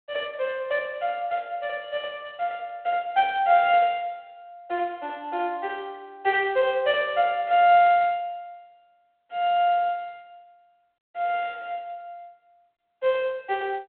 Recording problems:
telephone audio; 300 Hz to 3.5 kHz, G.726

